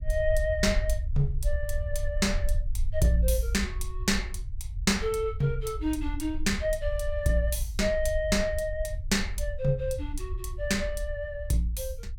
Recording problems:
rumble; below 64 Hz, SNR 6 dB

